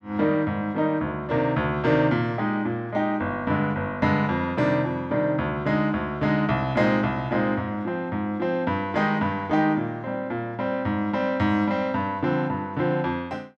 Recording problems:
none

